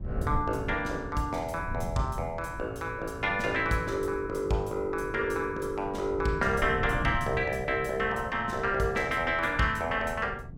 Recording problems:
wind on the microphone; below 150 Hz, SNR 11 dB

